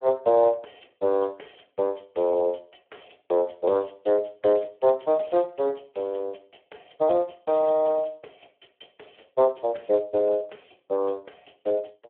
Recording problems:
telephone audio; 260 Hz to 3.4 kHz, Speex

